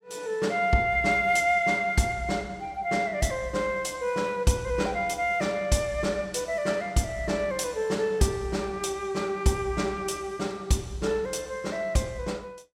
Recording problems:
none

